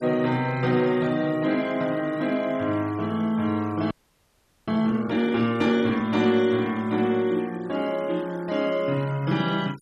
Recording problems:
noise reduction artefacts; signal-to-artefact ratio 23 dB
frozen audio; at 4 s for 1 s

